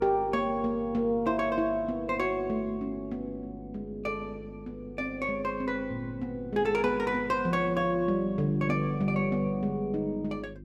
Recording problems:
hum; 50 Hz, harmonics up to 350 Hz, SNR 17 dB

